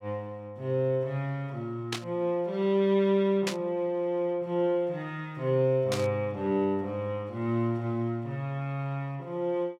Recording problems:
burst of static; at 2 s, at 3.5 s and at 6 s; peak +2 dB vs average level

